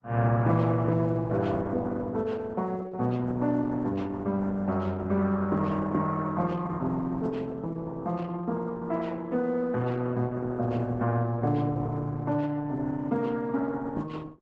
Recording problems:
lossy compression; Opus, log-spectral distance 3 dB, nothing above 7.3 kHz

